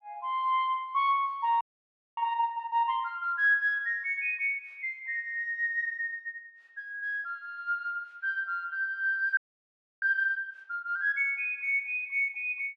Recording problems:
frozen audio; at 1.5 s for 0.5 s and at 9.5 s for 0.5 s

